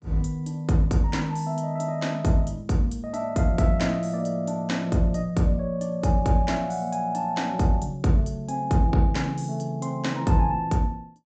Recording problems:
low-pass filter; nothing above 8 kHz

